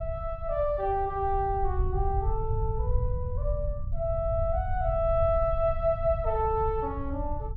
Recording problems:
low-frequency rumble; below 86 Hz, SNR 4 dB

